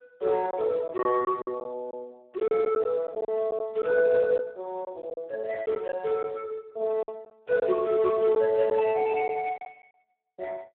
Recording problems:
telephone audio; 260 Hz to 2.6 kHz, Speex
lost packets; 6% of the sound replaced, filled with silence

